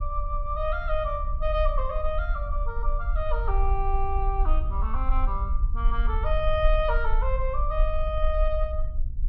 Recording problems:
rumble; below 48 Hz, strongest tone 24 Hz, SNR -1 dB

